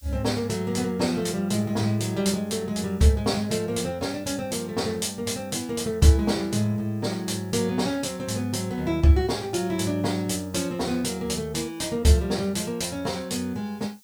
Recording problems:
background hiss; slope +7 dB per octave, SNR 28 dB

